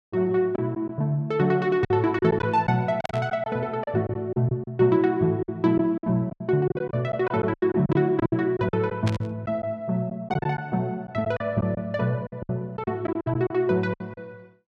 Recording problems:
packet loss; 11% of the sound replaced, filled with silence
static burst; at 3 s and at 9 s; peak -4 dB vs average level

